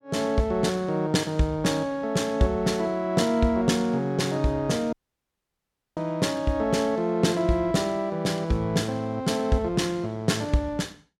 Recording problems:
dropout; at 5 s for 1 s

